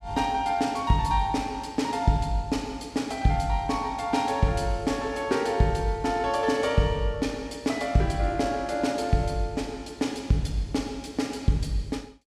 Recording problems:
none

